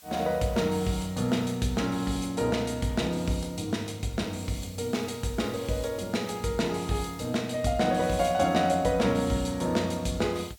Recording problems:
background hiss; slope +2 dB per octave, SNR 24 dB

